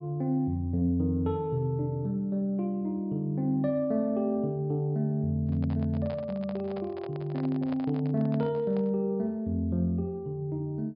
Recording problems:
low-pass filter; nothing above 5.1 kHz
microphone handling noise; from 5.5 to 9 s; peak -8 dB vs average level

